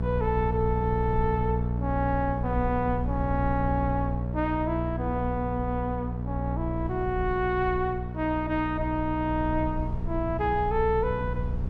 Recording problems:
hum; 60 Hz, harmonics up to 900 Hz, SNR 2 dB
low-frequency rumble; below 78 Hz, SNR 10 dB

